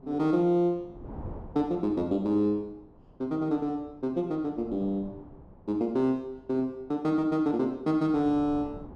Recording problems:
wind noise; below 380 Hz, SNR 21 dB

